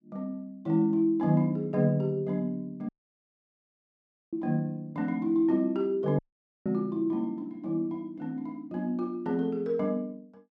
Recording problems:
audio cutting out; at 3 s for 1.5 s and at 6 s

